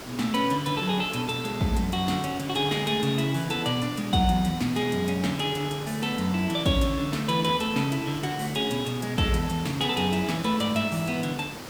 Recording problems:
background hiss; slope -4 dB per octave, SNR 12 dB

